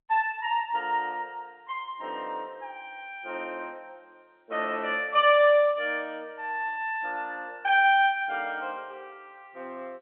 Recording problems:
telephone audio; 220 Hz to 3.5 kHz, G.711

